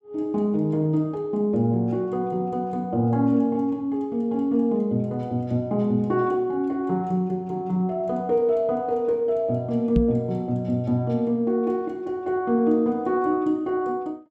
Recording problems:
microphone thump; at 10 s; peak +5 dB vs average level

